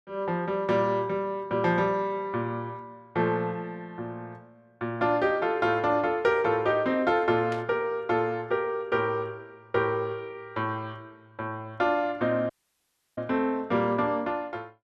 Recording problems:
static burst; at 7.5 s; peak -10 dB vs average level
audio cutting out; at 13 s for 0.5 s

